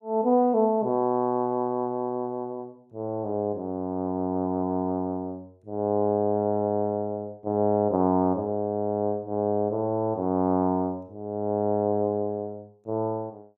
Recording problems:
none

